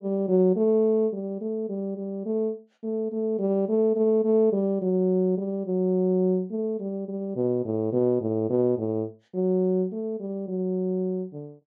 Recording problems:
none

